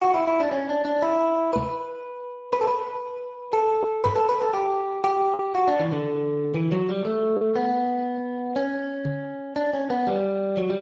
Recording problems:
codec artefacts; Speex, log-spectral distance 2 dB
packet loss; 0.9% of the sound replaced, filled with the last packet
knock on the microphone; at 1.5 s, at 4 s and at 9 s; peak +2 dB vs average level

